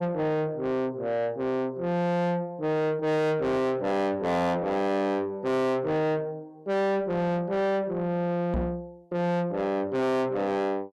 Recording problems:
distortion; soft clipping, signal-to-distortion ratio 6 dB
microphone thump; at 8.5 s; peak +3 dB vs average level

